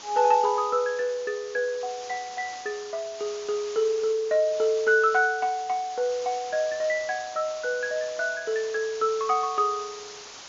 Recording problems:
low-pass filter; nothing above 7.1 kHz
hiss; slope 0 dB per octave, SNR 15 dB

